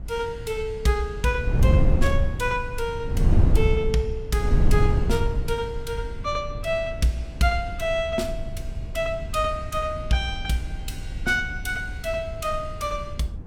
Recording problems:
wind noise; below 100 Hz, SNR 1 dB

